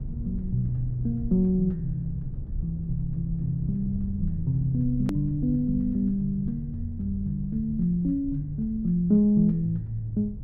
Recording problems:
rumble; below 130 Hz, SNR 10 dB
edit click; at 5 s

